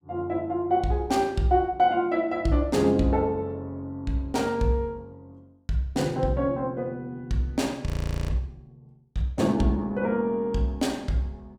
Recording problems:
frozen audio; at 8 s

